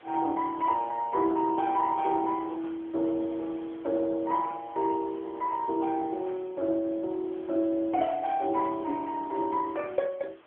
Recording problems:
telephone audio; 260 Hz to 3.2 kHz, AMR-NB
background hiss; SNR 26 dB

